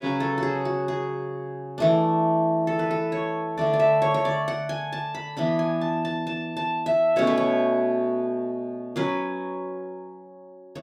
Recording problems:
none

